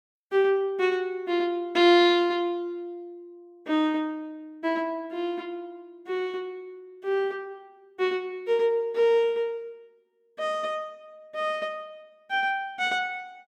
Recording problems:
none

